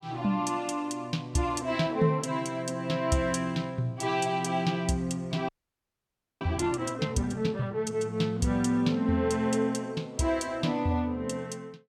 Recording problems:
audio freezing; at 5.5 s for 1 s

